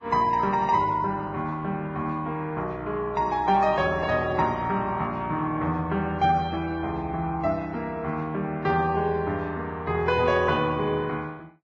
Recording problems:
codec artefacts; Vorbis, log-spectral distance 2 dB

